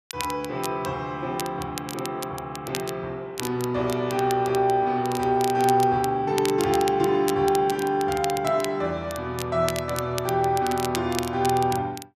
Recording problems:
crackle; vinyl, SNR 12 dB

